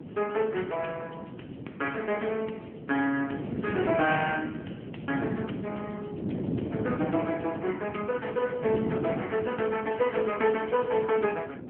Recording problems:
telephone audio; 220 Hz to 3.1 kHz, AMR-NB
wind noise; below 360 Hz, SNR 7 dB

